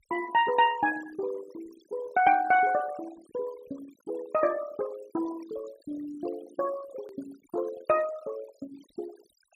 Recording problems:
noise reduction artefacts; signal-to-artefact ratio 17 dB
click at an edit; at 7 s

